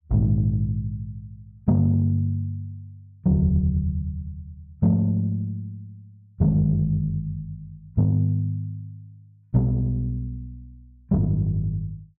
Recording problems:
none

